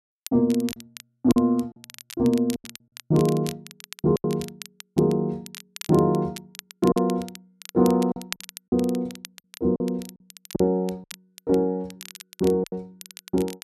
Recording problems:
crackle; vinyl, SNR 17 dB
packet loss; 8% of the sound replaced, filled with silence

